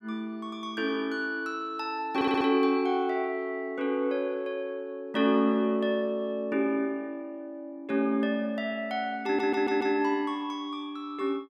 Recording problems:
audio stuttering; at 2 s and at 9.5 s

